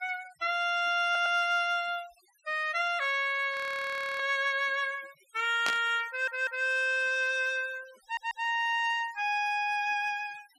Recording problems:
noise reduction artefacts; signal-to-artefact ratio 24 dB
audio stuttering; at 1 s, at 6 s and at 8 s
frozen audio; at 3.5 s for 0.5 s
burst of static; at 5.5 s; peak 0 dB vs average level

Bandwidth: 14 kHz